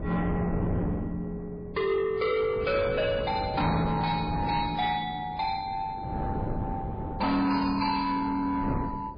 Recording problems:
codec artefacts; MP3, log-spectral distance 2 dB, nothing above 4.1 kHz
distortion; soft clipping, signal-to-distortion ratio 11 dB
wind noise; below 390 Hz, SNR 6 dB

